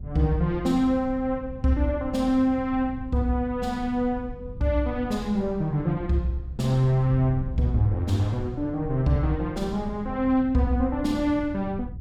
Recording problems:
wind noise; below 110 Hz, SNR 13 dB

